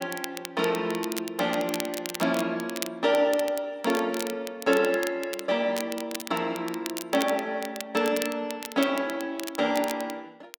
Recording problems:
crackling; vinyl, SNR 11 dB

